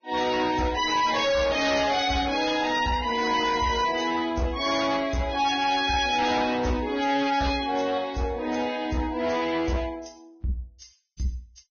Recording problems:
codec artefacts; Vorbis, log-spectral distance 5 dB, nothing above 6.3 kHz
distorted audio; soft clipping, signal-to-distortion ratio 7 dB

